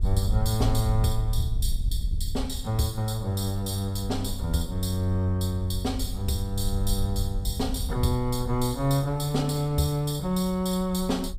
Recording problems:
wind on the microphone; below 66 Hz, SNR 6 dB

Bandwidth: 15.5 kHz